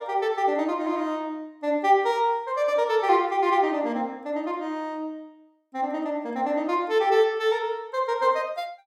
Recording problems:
none

